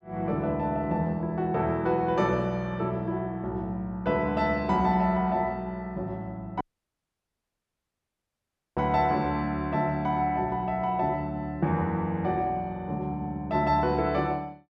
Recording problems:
dropout; at 6.5 s for 2 s

